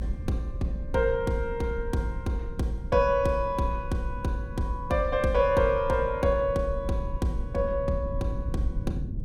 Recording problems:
low-frequency rumble; below 100 Hz, SNR 9 dB

